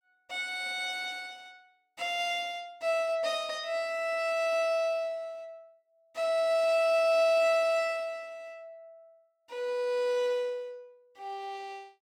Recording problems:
none

